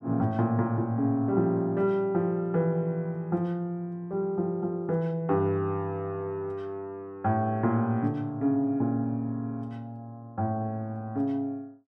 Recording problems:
none

